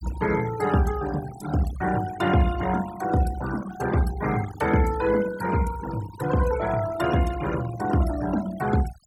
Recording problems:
noise reduction artefacts; signal-to-artefact ratio 14 dB

